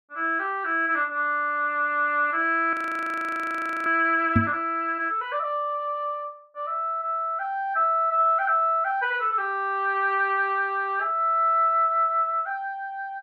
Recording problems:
frozen audio; at 2.5 s for 1 s
microphone bump; at 4.5 s; peak +6 dB vs average level

